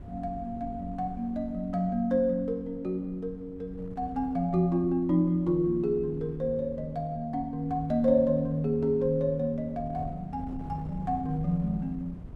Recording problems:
wind noise; below 170 Hz, SNR 16 dB

